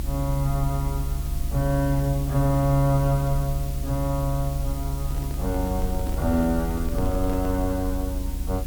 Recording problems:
hum; 50 Hz, harmonics up to 350 Hz, SNR 15 dB
hiss; slope -1 dB per octave, SNR 15 dB
rumble; below 66 Hz, strongest tone 40 Hz, SNR 5 dB
microphone handling noise; from 5 to 7.5 s; peak -8 dB vs average level

